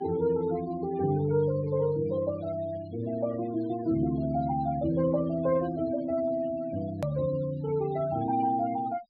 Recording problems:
treble missing; nothing above 4.7 kHz
denoising artefacts; signal-to-artefact ratio 17 dB
edit click; at 7 s

